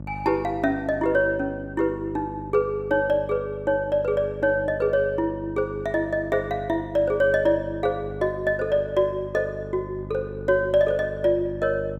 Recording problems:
electrical hum; 50 Hz, harmonics up to 650 Hz, SNR 14 dB

